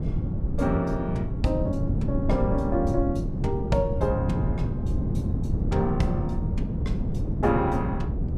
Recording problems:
wind on the microphone; below 190 Hz, SNR 0 dB

